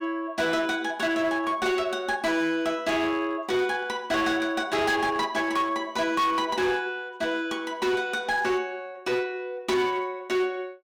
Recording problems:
distortion; hard clipping, uneven, signal-to-distortion ratio 11 dB

